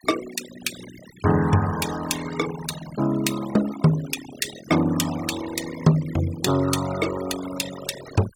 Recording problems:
denoising artefacts; signal-to-artefact ratio 11 dB

